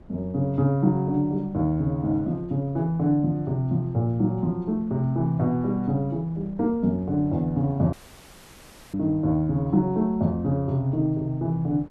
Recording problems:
wind noise; below 270 Hz, SNR 22 dB
dropout; at 8 s for 1 s

